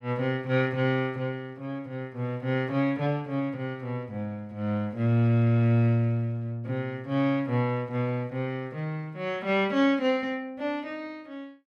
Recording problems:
none

